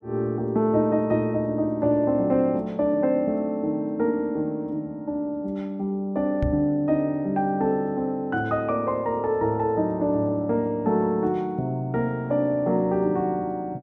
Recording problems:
knock on the microphone; at 6.5 s; peak +2 dB vs average level

